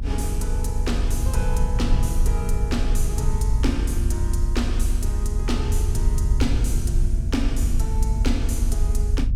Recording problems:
hum; 60 Hz, harmonics up to 600 Hz, SNR 9 dB
low-frequency rumble; below 76 Hz, strongest tone 28 Hz, SNR -6 dB

